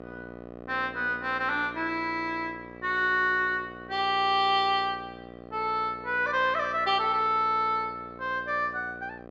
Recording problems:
electrical hum; 60 Hz, harmonics up to 1.9 kHz, SNR 17 dB

